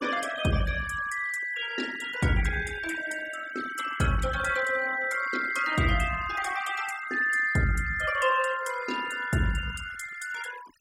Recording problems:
denoising artefacts; signal-to-artefact ratio 13 dB

